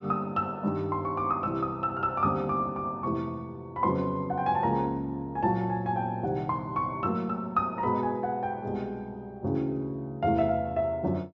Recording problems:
low-pass filter; nothing above 8 kHz

